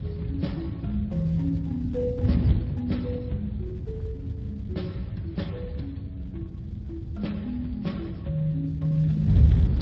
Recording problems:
lossy codec; MP3, then Speex, log-spectral distance 2 dB
wind on the microphone; below 130 Hz, SNR 0 dB

